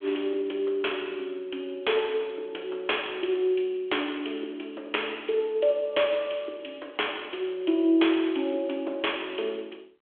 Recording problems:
phone line; 280 Hz to 3.4 kHz, G.726

